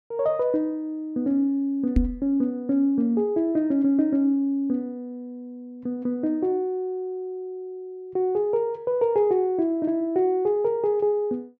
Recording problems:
knock on the microphone; at 2 s; peak +7 dB vs average level

